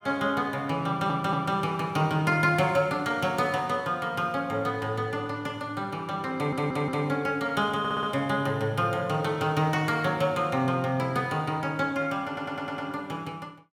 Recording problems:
stutter; 4 times, first at 1 s

